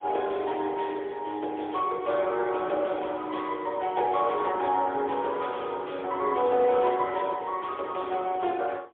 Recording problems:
telephone audio; 300 Hz to 3.4 kHz, AMR-NB, then MP3

